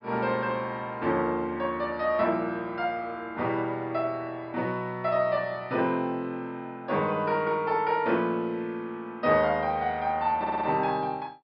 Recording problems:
low-pass filter; nothing above 5.5 kHz
stutter; at 10 s

